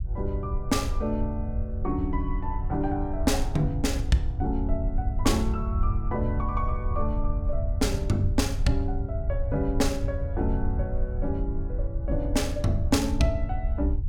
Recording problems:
low-frequency rumble; below 80 Hz, SNR 1 dB

